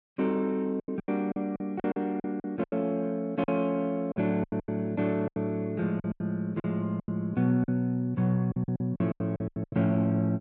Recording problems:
lost packets; 15% of the sound replaced, filled with silence

